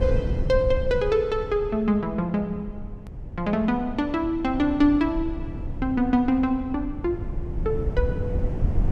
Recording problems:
low-frequency rumble; below 110 Hz, SNR 8 dB
click at an edit; at 3 s

